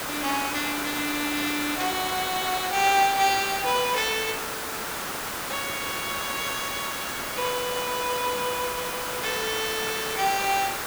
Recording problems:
background hiss; SNR 3 dB

